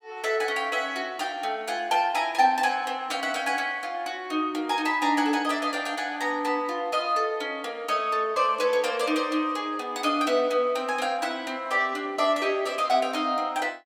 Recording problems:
none

